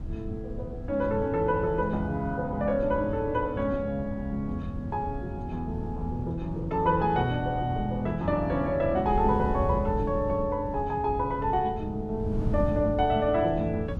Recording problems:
wind on the microphone; below 140 Hz, SNR 9 dB

